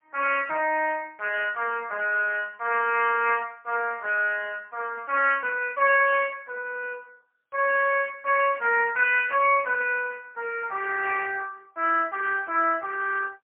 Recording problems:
telephone audio; 240 Hz to 3.1 kHz, AMR-NB, then MP3

